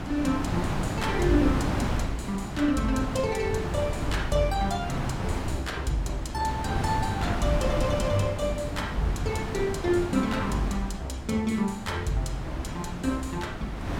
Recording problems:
wind noise; below 650 Hz, SNR 3 dB

